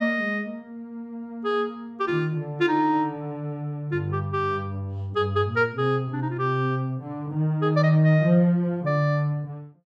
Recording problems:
none

